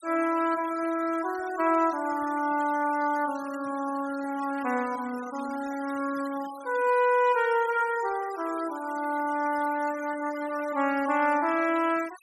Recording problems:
noise reduction artefacts; signal-to-artefact ratio 19 dB

